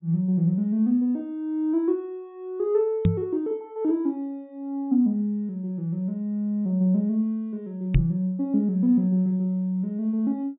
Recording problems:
low-pass filter; nothing above 4 kHz
microphone bump; at 3 s and at 8 s; peak +8 dB vs average level

